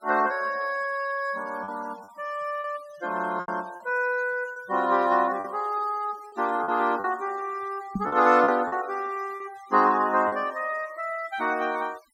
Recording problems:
noise reduction artefacts; signal-to-artefact ratio 22 dB
lost packets; 5% of the sound replaced, filled with repeated pitch periods
microphone bump; at 8 s; peak +1 dB vs average level

